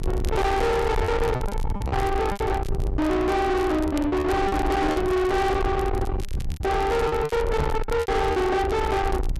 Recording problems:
distorted audio; soft clipping, signal-to-distortion ratio 6 dB
low-frequency rumble; below 720 Hz, SNR 4 dB
crackle; vinyl, SNR 24 dB
lost packets; 9% of the sound replaced, filled with repeated pitch periods
knock on the microphone; at 2 s and at 7.5 s; peak +1 dB vs average level

